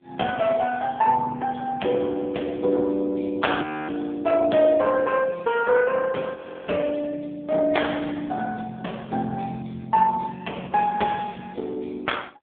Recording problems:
phone line; 190 Hz to 3.4 kHz, AMR-NB
frozen audio; at 3.5 s and at 6.5 s

